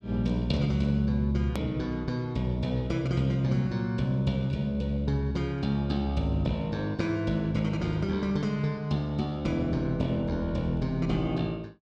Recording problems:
hard cut with a click; at 1.5 s

